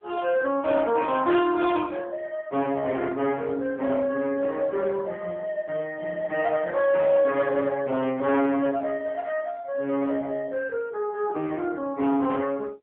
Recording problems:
phone line; 300 Hz to 3.5 kHz, AMR-NB
distorted audio; hard clipping, signal-to-distortion ratio 11 dB

